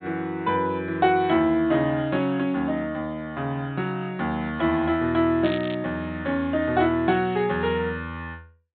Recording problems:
low-pass filter; nothing above 4 kHz
crackling; at 5.5 s; loose cable, SNR 16 dB

